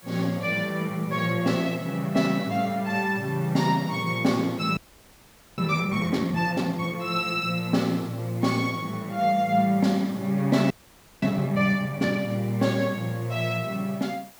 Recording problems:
hiss; slope -2 dB per octave, SNR 23 dB
frozen audio; at 5 s for 1 s and at 11 s for 0.5 s

